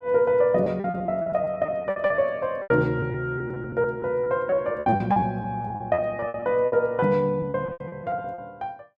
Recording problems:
lost packets; 18% of the sound replaced, filled with repeated pitch periods

